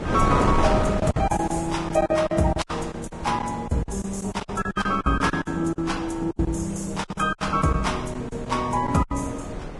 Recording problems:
codec artefacts; Vorbis, log-spectral distance 4 dB, nothing above 11 kHz
wind noise; below 560 Hz, SNR 7 dB
lost packets; 15% of the sound replaced, filled with silence

